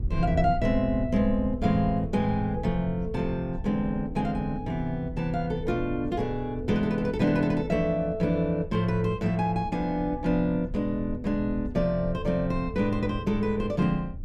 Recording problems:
low-frequency rumble; below 96 Hz, SNR 11 dB

